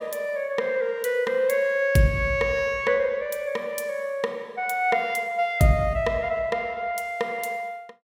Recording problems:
none

